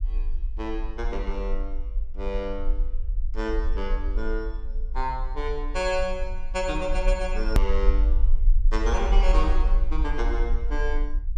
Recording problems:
low-frequency rumble; below 44 Hz, strongest tone 22 Hz, SNR -2 dB
hard cut with a click; at 7.5 s

